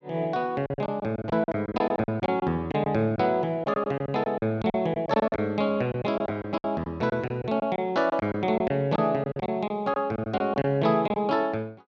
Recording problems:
lost packets; 13% of the sound replaced, filled with silence

